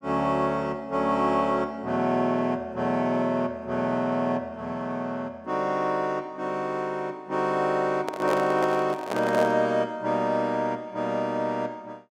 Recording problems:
handling noise; from 8 to 9.5 s; peak 0 dB vs average level

